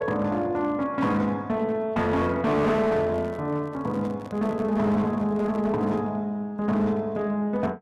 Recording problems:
distorted audio; hard clipping, signal-to-distortion ratio 12 dB
handling noise; from 3 to 6 s; peak -12 dB vs average level

